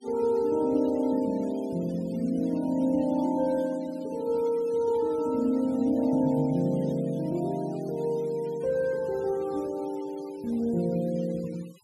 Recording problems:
noise reduction artefacts; signal-to-artefact ratio 24 dB

